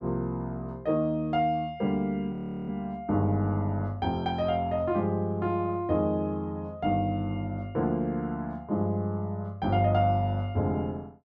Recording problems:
frozen audio; at 2.5 s

